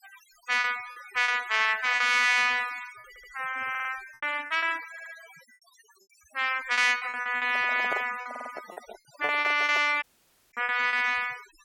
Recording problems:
noise reduction artefacts; signal-to-artefact ratio 19 dB
lost packets; 9% of the sound replaced, filled with repeated pitch periods
stutter; 4 times, first at 3 s
microphone handling noise; from 7.5 to 10 s; peak -4 dB vs average level
audio cutting out; at 10 s for 0.5 s

